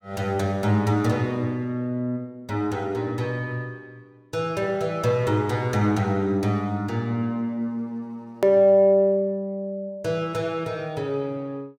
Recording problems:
edit click; at 8.5 s

